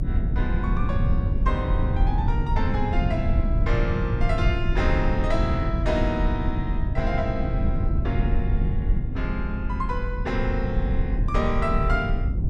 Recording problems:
rumble; below 100 Hz, SNR -3 dB

